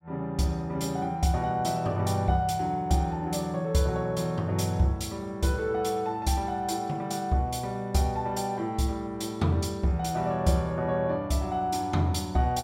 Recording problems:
none

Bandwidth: 16.5 kHz